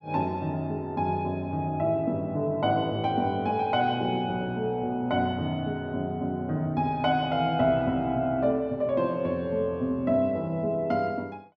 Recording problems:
none

